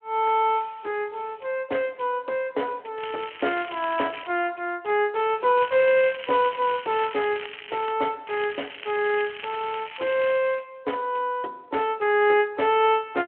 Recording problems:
phone line; 300 Hz to 3.2 kHz, Speex
crackle; from 3 to 4.5 s, from 5.5 to 8 s and from 8.5 to 10 s; loose cable, SNR 13 dB

